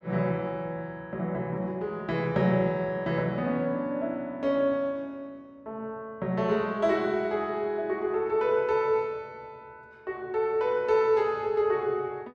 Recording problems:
none

